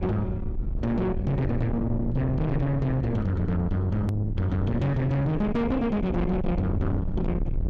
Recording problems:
distortion; soft clipping, signal-to-distortion ratio 7 dB
rumble; below 180 Hz, SNR 5 dB
edit click; at 4 s

